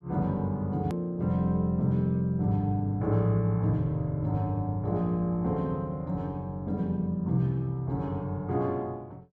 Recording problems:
click at an edit; at 1 s

